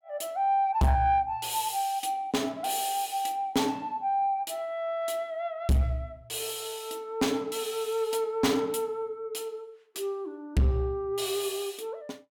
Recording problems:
distorted audio; soft clipping, signal-to-distortion ratio 7 dB

